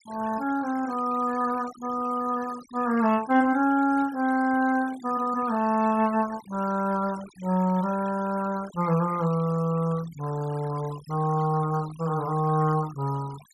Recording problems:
denoising artefacts; signal-to-artefact ratio 20 dB

